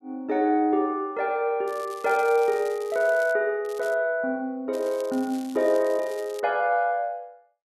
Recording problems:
crackle; from 1.5 to 3.5 s, at 3.5 s and from 4.5 to 6.5 s; loose cable, SNR 22 dB

